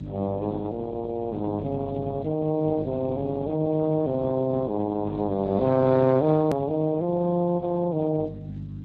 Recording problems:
codec artefacts; Speex, log-spectral distance 2 dB, nothing above 13.1 kHz
electrical hum; 50 Hz, harmonics up to 350 Hz, SNR 12 dB
edit click; at 6.5 s

